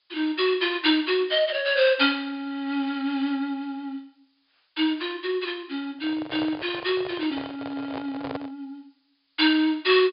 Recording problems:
treble cut off; nothing above 5.1 kHz
background hiss; SNR 44 dB
microphone handling noise; from 6 to 8.5 s; peak -4 dB vs average level

